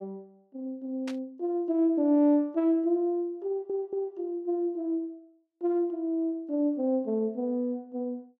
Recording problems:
burst of static; at 1 s; peak -9 dB vs average level
audio stuttering; at 3.5 s

